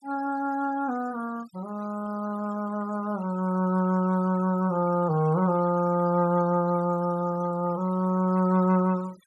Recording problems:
noise reduction artefacts; signal-to-artefact ratio 22 dB

